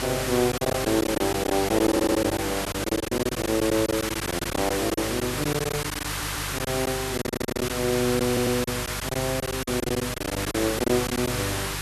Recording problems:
hum; 50 Hz, harmonics up to 700 Hz, SNR 12 dB
background hiss; SNR 3 dB
packet loss; 13% of the sound replaced, filled with silence
stutter; 4 times, first at 2 s

